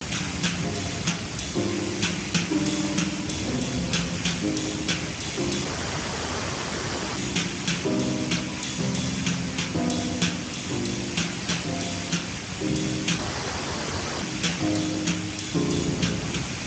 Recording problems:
lossy compression; Speex, log-spectral distance 15 dB, nothing above 7.3 kHz
background hiss; slope +1 dB per octave, SNR 6 dB
wind noise; below 320 Hz, SNR 9 dB
dropout; at 5.5 s for 1.5 s and at 13 s for 1 s

